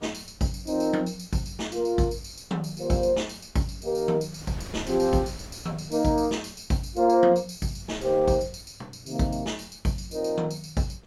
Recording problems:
wind on the microphone; below 650 Hz, SNR 21 dB

